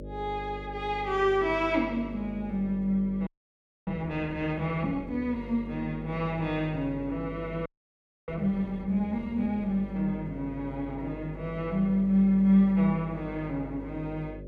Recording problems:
electrical hum; 50 Hz, harmonics up to 600 Hz, SNR 13 dB
frozen audio; at 3.5 s for 0.5 s and at 7.5 s for 0.5 s

